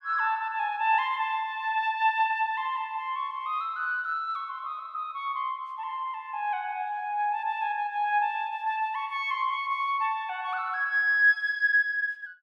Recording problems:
none

